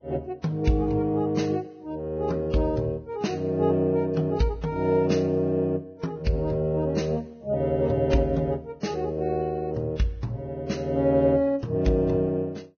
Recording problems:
lossy compression; Vorbis, log-spectral distance 2 dB, nothing above 6.5 kHz

